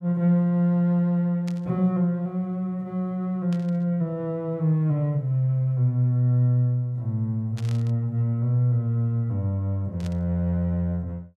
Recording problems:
static burst; 4 times, first at 1.5 s; peak -14 dB vs average level

